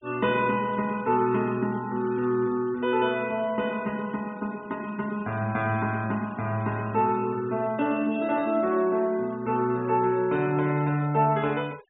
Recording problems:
low-pass filter; nothing above 4 kHz
noise reduction artefacts; signal-to-artefact ratio 24 dB

